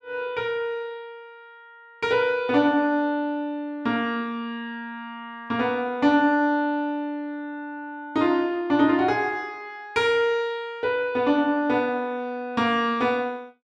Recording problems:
none

